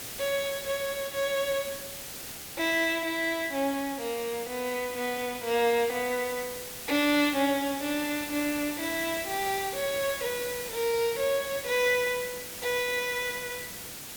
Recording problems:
background hiss; SNR 9 dB

